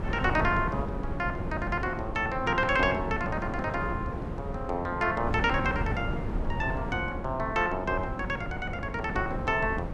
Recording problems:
wind noise; below 290 Hz, SNR 5 dB

